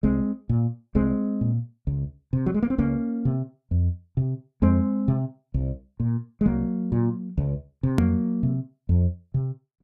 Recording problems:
hard cut with a click; at 8 s

